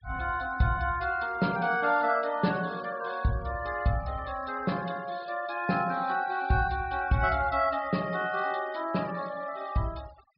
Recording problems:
treble cut off; nothing above 5.5 kHz
denoising artefacts; signal-to-artefact ratio 23 dB

